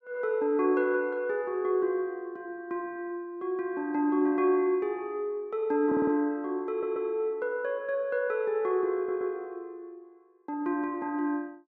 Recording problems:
stutter; at 6 s, at 6.5 s and at 9 s

